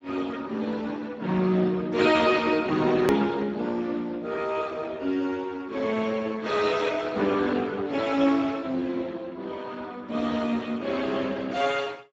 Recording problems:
lossy codec; Speex, log-spectral distance 4 dB, nothing above 16.1 kHz
click at an edit; at 3 s

